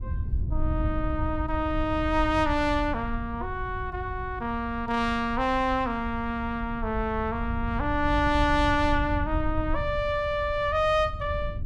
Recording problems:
wind noise; below 90 Hz, SNR 7 dB

